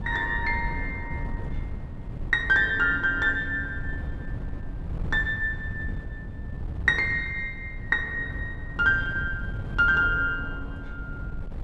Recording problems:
wind on the microphone; below 130 Hz, SNR 10 dB

